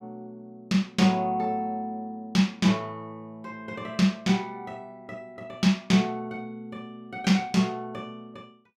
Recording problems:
none

